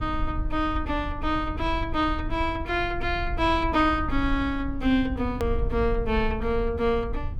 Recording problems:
rumble; below 70 Hz, SNR 8 dB
edit click; at 5.5 s

